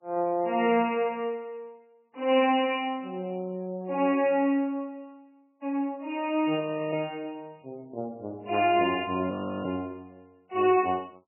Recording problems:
codec artefacts; MP3, log-spectral distance 3 dB, nothing above 2.6 kHz
audio freezing; at 6.5 s and at 9.5 s

